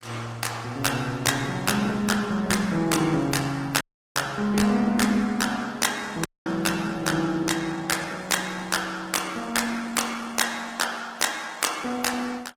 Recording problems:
lossy codec; Opus, log-spectral distance 5 dB
dropout; at 4 s and at 6.5 s

